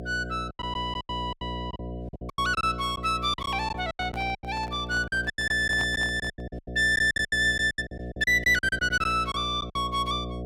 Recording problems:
hum; 60 Hz, harmonics up to 720 Hz, SNR 11 dB
packet loss; 16% of the sound replaced, filled with silence
microphone handling noise; from 4 to 6.5 s; peak -7 dB vs average level

